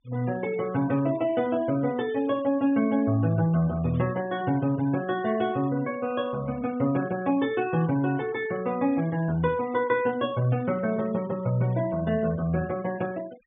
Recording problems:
treble cut off; nothing above 3.6 kHz
denoising artefacts; signal-to-artefact ratio 22 dB
burst of static; at 4 s; peak -25 dB vs average level

